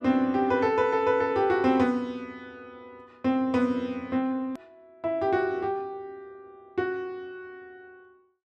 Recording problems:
click at an edit; at 4.5 s

